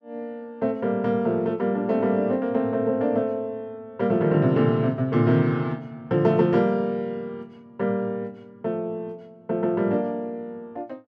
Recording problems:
none

